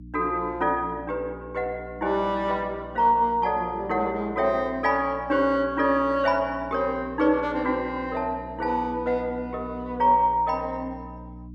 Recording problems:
hum; 60 Hz, harmonics up to 300 Hz, SNR 18 dB

